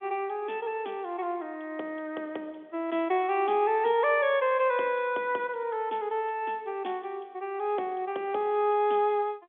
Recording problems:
telephone audio; 280 Hz to 3.5 kHz, G.711

